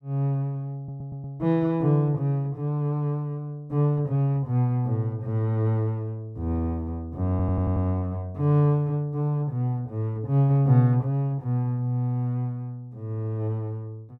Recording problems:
audio stuttering; at 1 s and at 7.5 s

